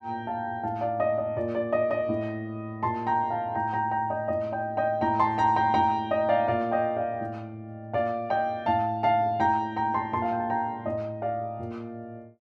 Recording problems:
none

